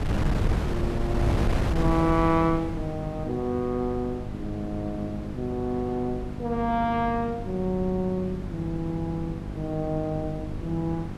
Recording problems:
hum; 50 Hz, harmonics up to 800 Hz, SNR 9 dB
wind noise; below 220 Hz, SNR 4 dB

